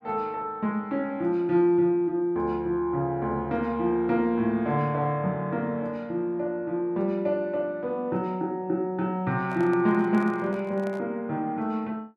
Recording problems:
microphone handling noise; from 9.5 to 11 s; peak -10 dB vs average level

